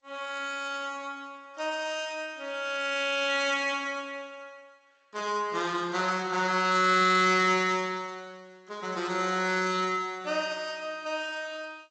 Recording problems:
codec artefacts; AAC, then G.722, log-spectral distance 3 dB, nothing above 7.3 kHz

